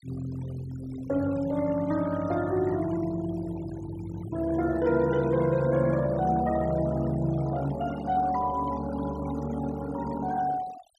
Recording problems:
noise reduction artefacts; signal-to-artefact ratio 18 dB

